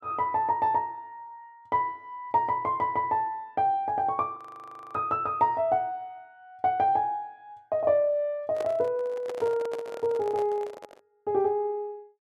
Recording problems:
frozen audio; at 4.5 s for 0.5 s
handling noise; from 8.5 to 11 s; peak -5 dB vs average level

